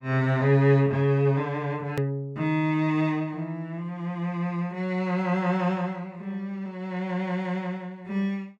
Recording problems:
click at an edit; at 2 s

